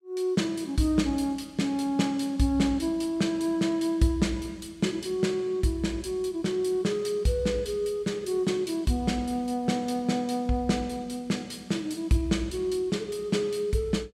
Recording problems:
none

